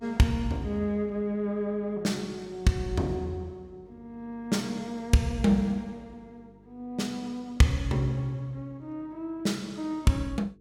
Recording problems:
hum; 50 Hz, harmonics up to 450 Hz, SNR 27 dB

